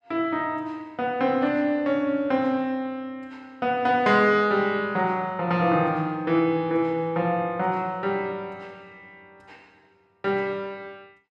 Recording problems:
none

